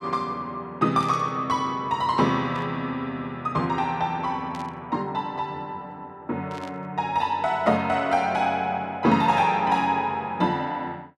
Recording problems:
static burst; 4 times, first at 1 s; peak -13 dB vs average level

